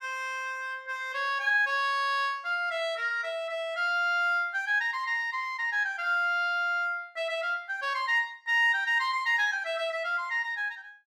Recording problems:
none

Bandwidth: 14.5 kHz